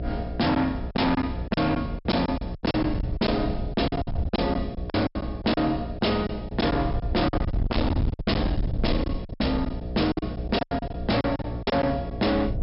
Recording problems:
treble cut off; nothing above 5.4 kHz
distorted audio; hard clipping, signal-to-distortion ratio 8 dB
hum; 60 Hz, harmonics up to 720 Hz, SNR 10 dB
wind noise; below 140 Hz, SNR 7 dB
packet loss; 13% of the sound replaced, filled with silence

